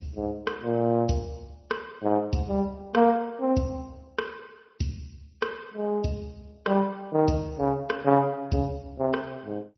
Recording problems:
lossy compression; MP3, then Opus, log-spectral distance 3 dB, nothing above 5.8 kHz

